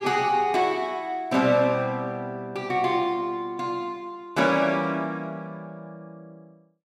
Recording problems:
none

